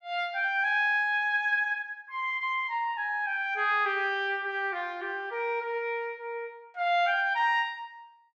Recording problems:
none

